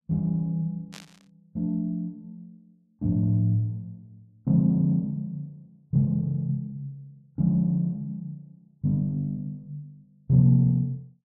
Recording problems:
burst of static; at 1 s; peak -12 dB vs average level

